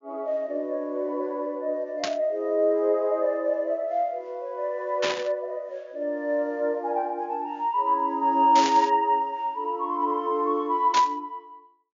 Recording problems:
treble cut off; nothing above 7.1 kHz
burst of static; 4 times, first at 2 s; peak +1 dB vs average level

